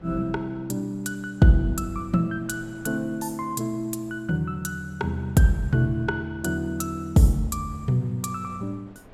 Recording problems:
wind noise; below 610 Hz, SNR 26 dB

